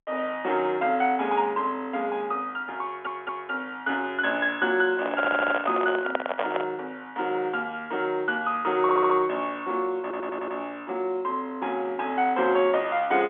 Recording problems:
phone line; 260 Hz to 3.5 kHz, G.711
stutter; 4 times, first at 3 s
handling noise; from 5 to 6.5 s; peak +4 dB vs average level

